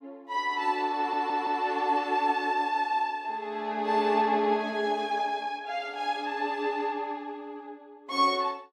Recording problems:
audio stuttering; at 1 s

